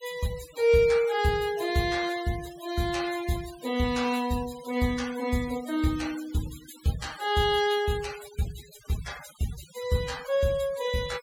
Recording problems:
denoising artefacts; signal-to-artefact ratio 16 dB

